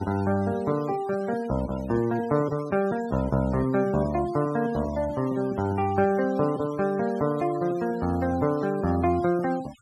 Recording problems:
noise reduction artefacts; signal-to-artefact ratio 19 dB

